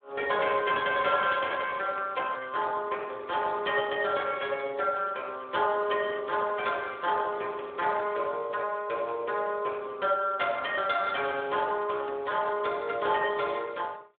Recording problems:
telephone audio; 320 Hz to 3.5 kHz, Speex

